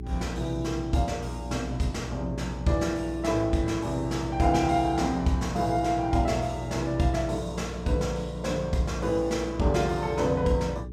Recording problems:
hum; 60 Hz, harmonics up to 420 Hz, SNR 11 dB

